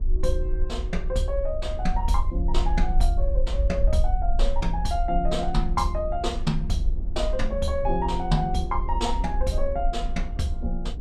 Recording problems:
low-frequency rumble; below 48 Hz, SNR 1 dB
wind noise; below 260 Hz, SNR 17 dB

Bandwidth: 14.5 kHz